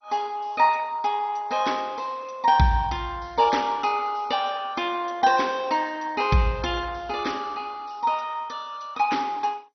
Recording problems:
codec artefacts; MP2, log-spectral distance 5 dB, nothing above 6 kHz

